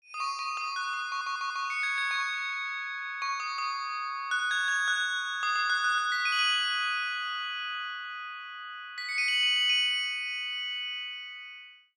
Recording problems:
audio stuttering; at 1 s

